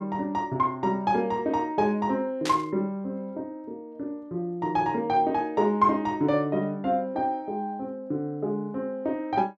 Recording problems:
burst of static; at 2.5 s; peak -1 dB vs average level

